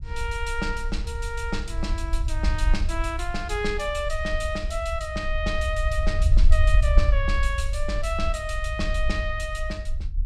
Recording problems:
low-frequency rumble; below 62 Hz, SNR -2 dB

